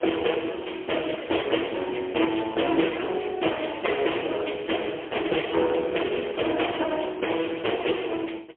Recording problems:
phone line; 280 Hz to 3.3 kHz, AMR-NB, then MP3

